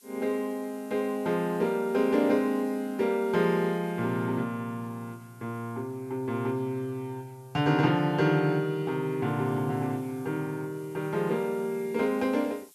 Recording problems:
hiss; slope +3 dB per octave, SNR 27 dB

